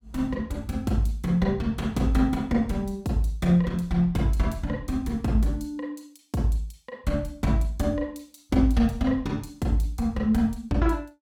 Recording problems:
none

